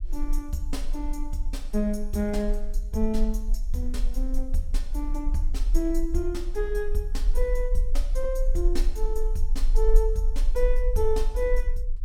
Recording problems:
rumble; below 36 Hz, strongest tone 20 Hz, SNR -1 dB

